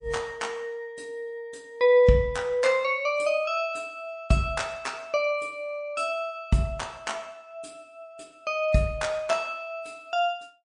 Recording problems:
codec artefacts; MP3, log-spectral distance 2 dB, nothing above 8.7 kHz

